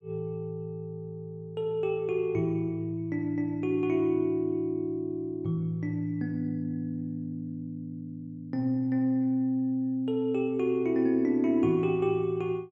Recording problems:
none

